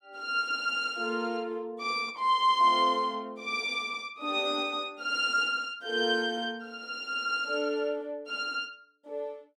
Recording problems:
none

